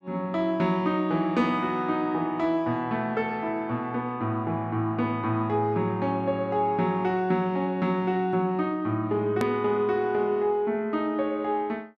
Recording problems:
edit click; at 9.5 s

